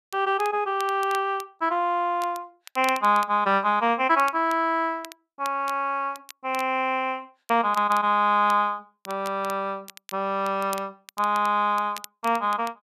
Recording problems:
crackle; vinyl, SNR 20 dB

